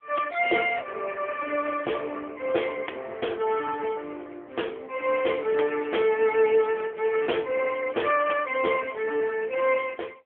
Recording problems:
phone line; 300 Hz to 3.4 kHz, AMR-NB

